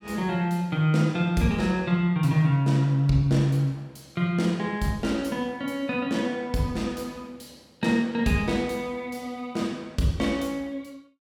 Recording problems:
none

